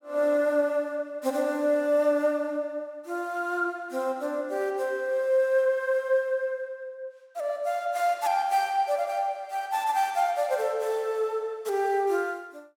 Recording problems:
none

